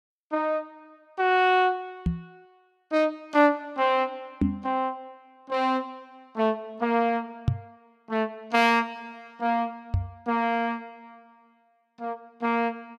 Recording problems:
microphone bump; 4 times, first at 2 s; peak +6 dB vs average level

